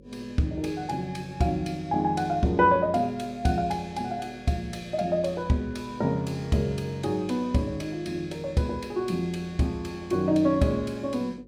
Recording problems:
electrical hum; 50 Hz, harmonics up to 550 Hz, SNR 24 dB

